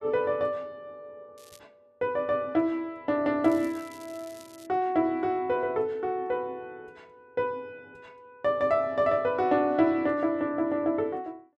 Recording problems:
crackle; at 1.5 s and from 3.5 to 4.5 s; loose cable, SNR 25 dB

